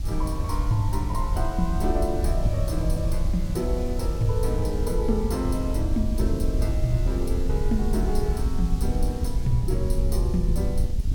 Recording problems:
hiss; SNR 18 dB
wind noise; below 70 Hz, SNR -1 dB

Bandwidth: 17 kHz